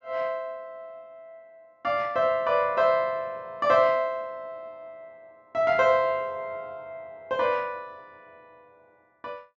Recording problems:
treble cut off; nothing above 8 kHz

